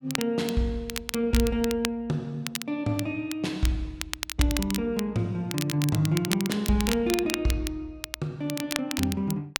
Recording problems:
crackle; vinyl, SNR 7 dB

